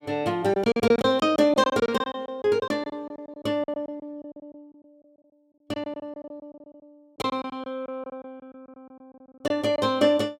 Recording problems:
packet loss; 16% of the sound replaced, filled with silence

